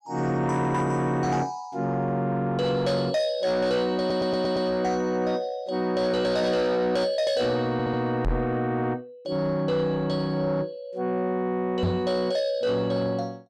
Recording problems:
distortion; soft clipping, signal-to-distortion ratio 11 dB
audio stuttering; at 4 s and at 7.5 s
knock on the microphone; at 8.5 s and at 12 s; peak +3 dB vs average level

